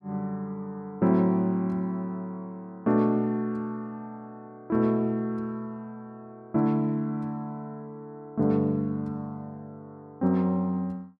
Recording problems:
none

